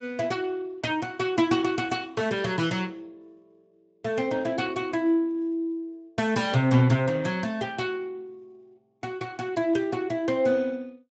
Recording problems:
codec artefacts; Speex, log-spectral distance 3 dB, nothing above 7.6 kHz

